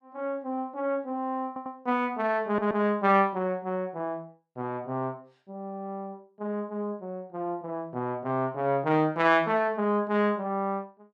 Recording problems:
stutter; at 1.5 s and at 2.5 s

